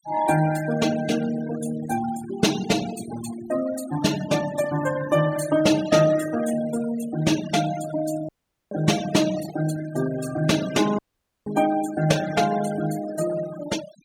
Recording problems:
denoising artefacts; signal-to-artefact ratio 13 dB
audio cutting out; at 8.5 s and at 11 s

